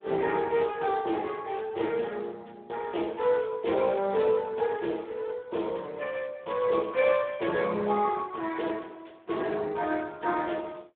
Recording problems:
phone line; 220 Hz to 2.9 kHz, Speex

